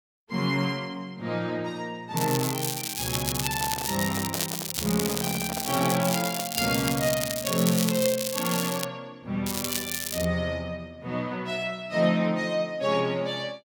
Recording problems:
crackle; from 2 to 4.5 s, from 4.5 to 9 s and at 9.5 s; loose cable, SNR 2 dB
microphone handling noise; from 3.5 to 6.5 s; peak -4 dB vs average level

